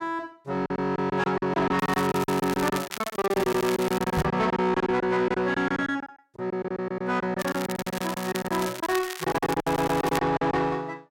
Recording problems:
distortion; soft clipping, signal-to-distortion ratio 10 dB
lost packets; 17% of the sound replaced, filled with silence
crackle; from 2 to 4.5 s and from 7.5 to 10 s; loose cable, SNR 11 dB
stutter; at 3.5 s and at 9.5 s
knock on the microphone; at 4 s; peak +5 dB vs average level

